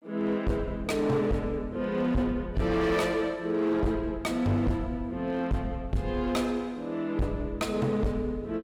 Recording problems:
distortion; hard clipping, signal-to-distortion ratio 7 dB

